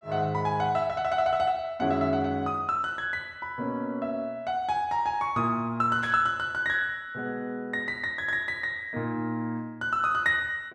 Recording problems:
burst of static; at 6 s; peak -11 dB vs average level

